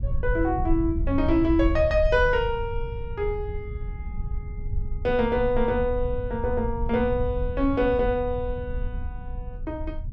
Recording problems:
rumble; below 80 Hz, SNR 7 dB

